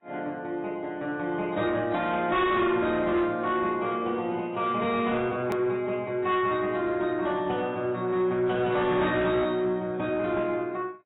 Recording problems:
lossy compression; AAC, log-spectral distance 2 dB, nothing above 3.4 kHz
distorted audio; soft clipping, signal-to-distortion ratio 11 dB
hard cut with a click; at 5.5 s

